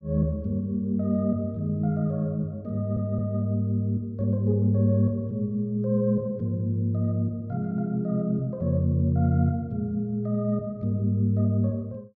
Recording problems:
audio stuttering; at 3 s

